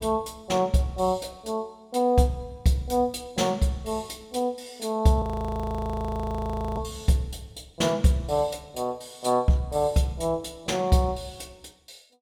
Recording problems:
audio freezing; at 5 s for 1.5 s

